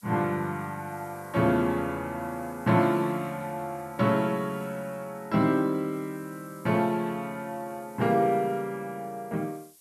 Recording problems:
background hiss; SNR 25 dB

